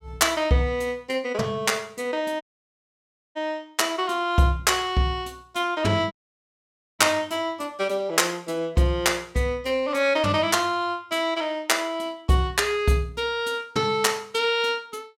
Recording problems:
dropout; at 2.5 s for 1 s and at 6 s for 1 s

